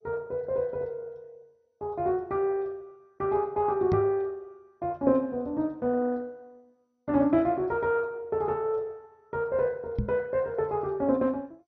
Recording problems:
lossy codec; MP2, log-spectral distance 2 dB
knock on the microphone; at 4 s and at 10 s; peak +3 dB vs average level

